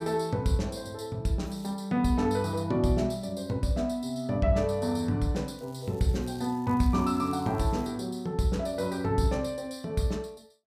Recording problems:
crackling; at 1.5 s and from 5.5 to 8 s; loose cable, SNR 27 dB

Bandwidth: 15 kHz